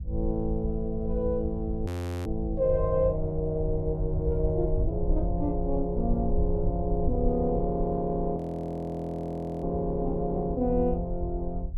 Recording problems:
low-frequency rumble; below 74 Hz, SNR 5 dB
frozen audio; at 2 s and at 8.5 s for 1.5 s

